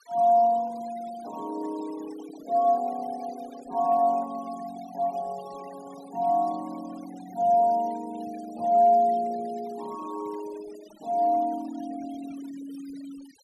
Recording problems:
denoising artefacts; signal-to-artefact ratio 21 dB

